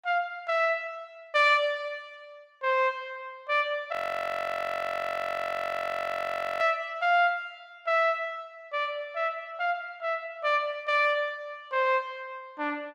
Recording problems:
frozen audio; at 4 s for 2.5 s

